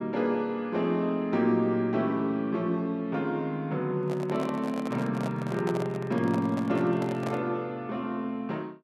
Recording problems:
microphone handling noise; from 4 to 7.5 s; peak -3 dB vs average level

